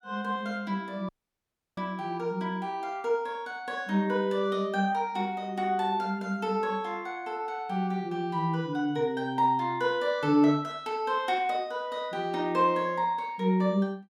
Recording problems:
audio cutting out; at 1 s for 0.5 s

